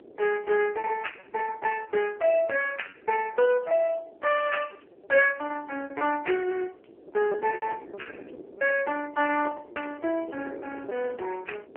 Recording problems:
phone line; 320 Hz to 2.9 kHz, AMR-NB
wind noise; below 510 Hz, SNR 19 dB
lost packets; 15% of the sound replaced, filled with repeated pitch periods

